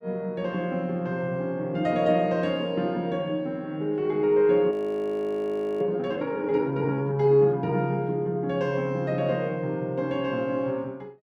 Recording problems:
audio freezing; at 4.5 s for 1 s

